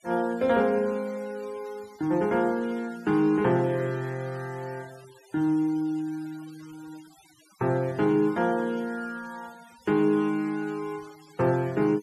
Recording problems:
noise reduction artefacts; signal-to-artefact ratio 25 dB

